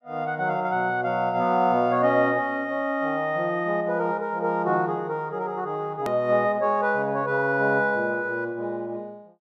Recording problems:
hard cut with a click; at 6 s

